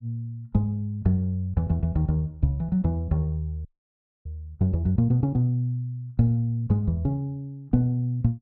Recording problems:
audio freezing; at 3.5 s for 0.5 s

